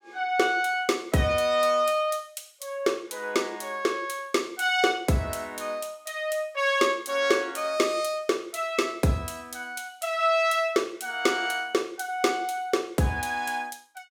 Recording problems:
none

